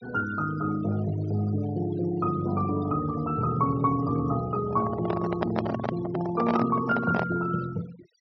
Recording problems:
treble cut off; nothing above 5.9 kHz
denoising artefacts; signal-to-artefact ratio 17 dB
microphone handling noise; from 4.5 to 7.5 s; peak +3 dB vs average level

